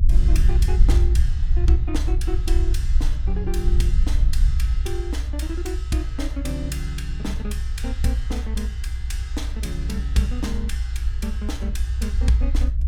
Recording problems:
rumble; below 60 Hz, SNR -5 dB

